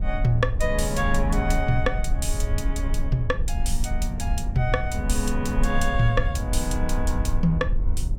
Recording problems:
rumble; below 64 Hz, SNR 2 dB

